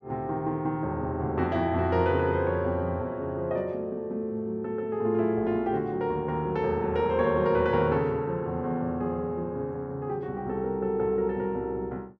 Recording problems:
none

